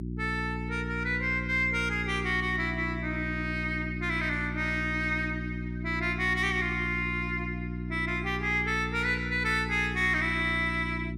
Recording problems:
hum; 60 Hz, harmonics up to 360 Hz, SNR 6 dB

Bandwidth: 15 kHz